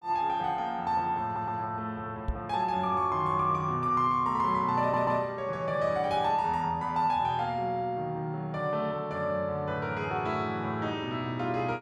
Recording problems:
stutter; at 1 s and at 5 s
knock on the microphone; at 2.5 s; peak +1 dB vs average level

